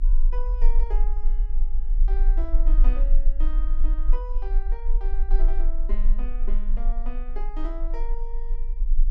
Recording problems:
low-frequency rumble; below 32 Hz, strongest tone 20 Hz, SNR -14 dB

